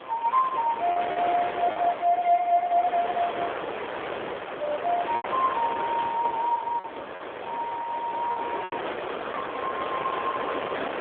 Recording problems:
phone line; 340 Hz to 3.4 kHz, AMR-NB
hiss; SNR 27 dB
wind on the microphone; below 1.6 kHz, SNR 6 dB
lost packets; 4% of the sound replaced, filled with repeated pitch periods

